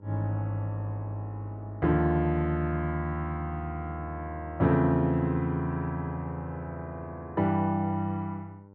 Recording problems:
hum; 50 Hz, harmonics up to 1.1 kHz, SNR 24 dB

